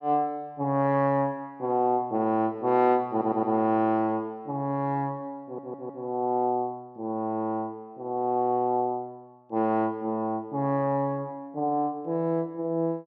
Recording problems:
audio stuttering; at 3 s and at 5.5 s

